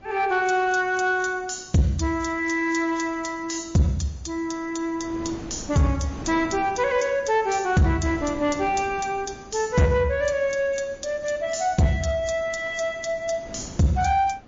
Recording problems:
lossy compression; MP3, log-spectral distance 5 dB
distorted audio; soft clipping, signal-to-distortion ratio 12 dB
wind noise; below 530 Hz, SNR 19 dB

